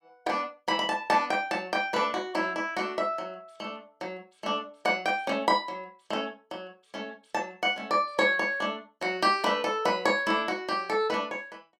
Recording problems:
none

